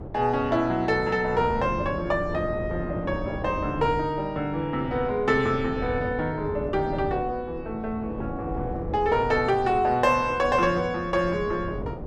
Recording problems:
wind on the microphone; below 390 Hz, SNR 10 dB

